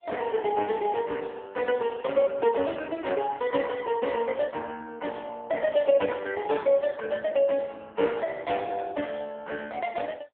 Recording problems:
telephone audio; 240 Hz to 3.4 kHz, AMR-NB

